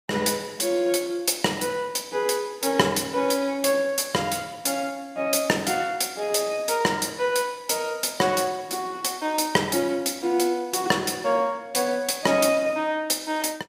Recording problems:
none

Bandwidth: 15.5 kHz